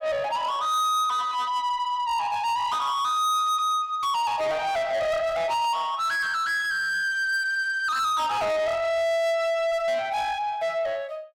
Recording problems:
distortion; soft clipping, signal-to-distortion ratio 7 dB

